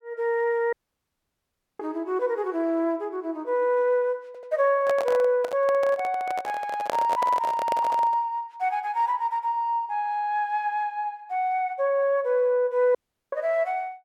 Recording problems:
audio cutting out; at 0.5 s for 1 s and at 13 s
stutter; at 4.5 s and at 8 s
microphone handling noise; from 4.5 to 8 s; peak 0 dB vs average level

